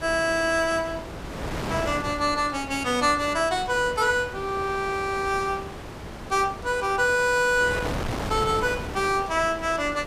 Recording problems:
wind noise; below 1.2 kHz, SNR 10 dB

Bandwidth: 15 kHz